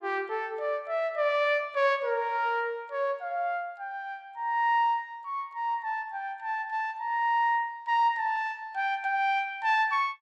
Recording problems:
none

